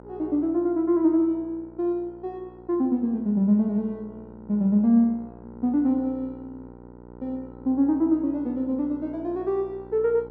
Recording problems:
hum; 60 Hz, harmonics up to 1.4 kHz, SNR 20 dB

